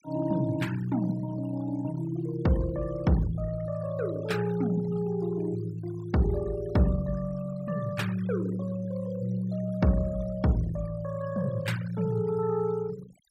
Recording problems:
noise reduction artefacts; signal-to-artefact ratio 19 dB

